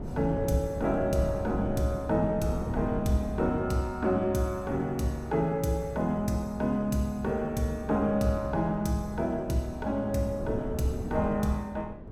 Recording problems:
wind on the microphone; below 290 Hz, SNR 10 dB

